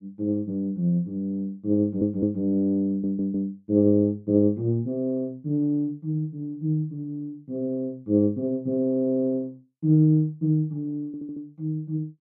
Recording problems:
stutter; at 2 s, at 3 s and at 11 s

